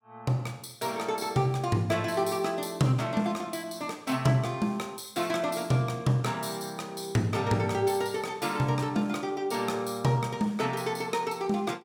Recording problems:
none

